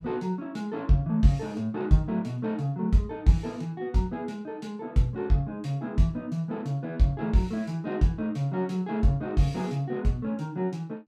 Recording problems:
none

